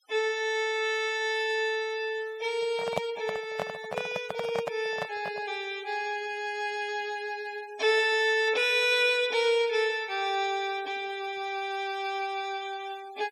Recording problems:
noise reduction artefacts; signal-to-artefact ratio 22 dB
microphone handling noise; from 2.5 to 5.5 s; peak +3 dB vs average level

